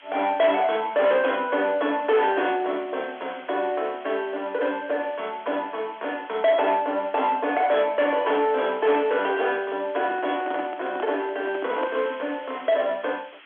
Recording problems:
phone line; 260 Hz to 3.4 kHz, G.711
distortion; soft clipping, signal-to-distortion ratio 11 dB
background hiss; SNR 22 dB
handling noise; from 10 to 12 s; peak -3 dB vs average level

